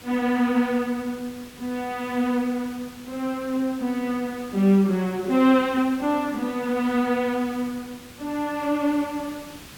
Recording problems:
background hiss; slope -2 dB per octave, SNR 19 dB

